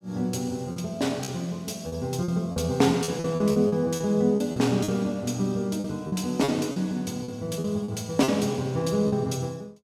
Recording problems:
packet loss; 9% of the sound replaced, filled with repeated pitch periods

